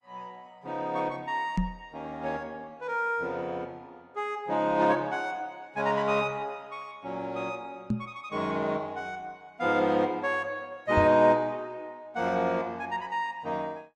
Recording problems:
lossy compression; Opus, log-spectral distance 2 dB, nothing above 11.3 kHz
microphone thump; at 1.5 s, at 8 s and at 11 s; peak +5 dB vs average level

